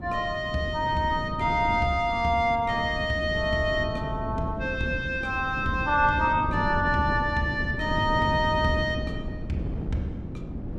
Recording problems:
wind noise; below 260 Hz, SNR 8 dB

